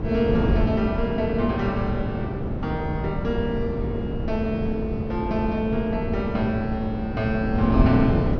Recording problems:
treble missing; nothing above 6.4 kHz
wind noise; below 290 Hz, SNR 2 dB

